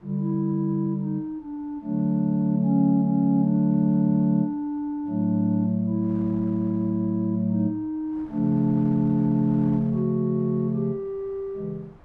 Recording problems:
wind on the microphone; below 700 Hz, SNR 27 dB

